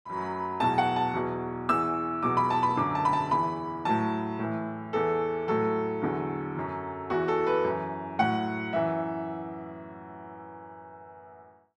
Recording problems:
none

